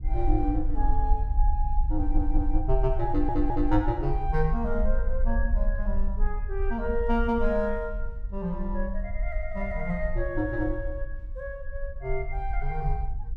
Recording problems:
low-frequency rumble; below 46 Hz, strongest tone 18 Hz, SNR 1 dB
audio stuttering; at 2 s and at 3 s

